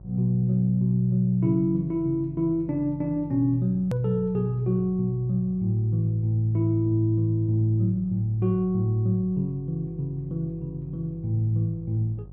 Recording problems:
electrical hum; 50 Hz, harmonics up to 550 Hz, SNR 20 dB
hard cut with a click; at 4 s

